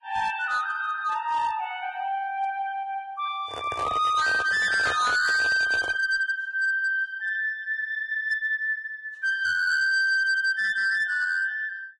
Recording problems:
codec artefacts; Vorbis, log-spectral distance 2 dB, nothing above 11 kHz
distortion; hard clipping, signal-to-distortion ratio 10 dB
microphone handling noise; from 3.5 to 6 s; peak -3 dB vs average level

